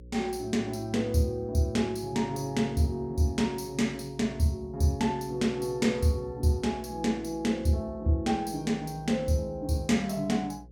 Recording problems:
hum; 60 Hz, harmonics up to 540 Hz, SNR 21 dB

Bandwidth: 18 kHz